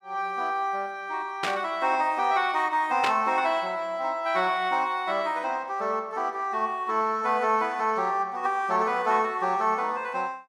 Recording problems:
static burst; at 1.5 s and at 3 s; peak +2 dB vs average level

